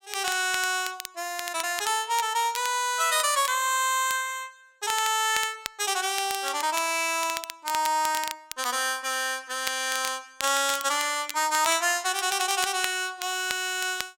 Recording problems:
crackling; vinyl, SNR 11 dB

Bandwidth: 16.5 kHz